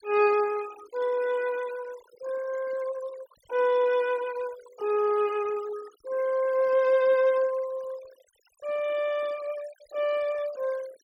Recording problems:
noise reduction artefacts; signal-to-artefact ratio 20 dB

